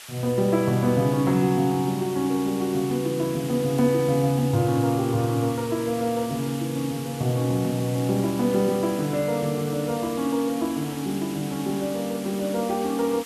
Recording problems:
background hiss; SNR 15 dB
crackling; from 3.5 to 6 s and from 7.5 to 11 s; loose cable, SNR 29 dB

